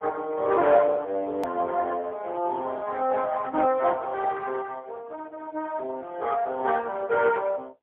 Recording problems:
phone line; 240 Hz to 3.5 kHz, AMR-NB, then MP3
hard cut with a click; at 1.5 s

